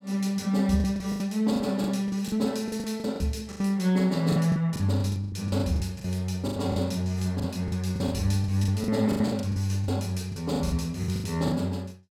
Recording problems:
packet loss; 16% of the sound replaced, filled with the last packet

